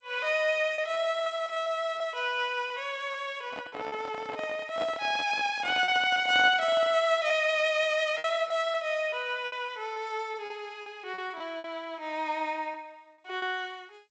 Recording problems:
lossy compression; G.722, log-spectral distance 2 dB, nothing above 7.8 kHz
packet loss; 7% of the sound replaced, filled with repeated pitch periods
handling noise; from 3.5 to 7 s; peak -5 dB vs average level

